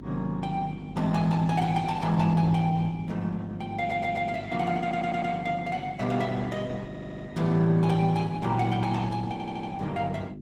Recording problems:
codec artefacts; Opus, log-spectral distance 3 dB, nothing above 18 kHz
electrical hum; 50 Hz, harmonics up to 400 Hz, SNR 13 dB
audio stuttering; 4 times, first at 4 s

